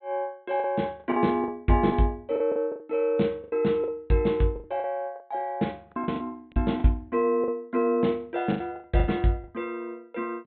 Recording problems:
treble cut off; nothing above 4 kHz
packet loss; 11% of the sound replaced, filled with the last packet

